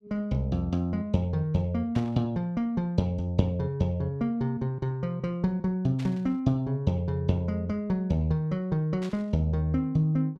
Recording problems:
burst of static; at 2 s, at 6 s and at 9 s; peak -12 dB vs average level

